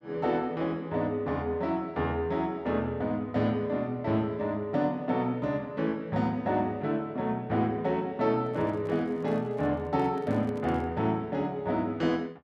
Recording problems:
microphone handling noise; from 8.5 to 11 s; peak -10 dB vs average level

